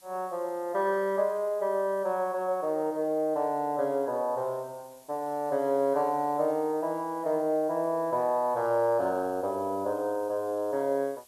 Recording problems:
background hiss; slope 0 dB per octave, SNR 27 dB

